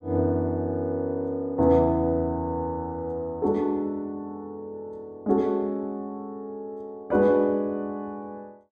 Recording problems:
none

